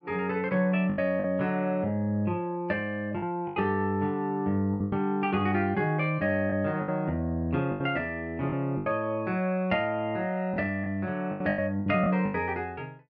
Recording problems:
packet loss; 8% of the sound replaced, filled with the last packet

